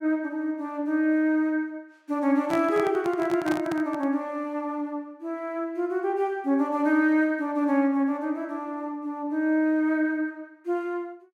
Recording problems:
microphone handling noise; from 2.5 to 4 s; peak -2 dB vs average level

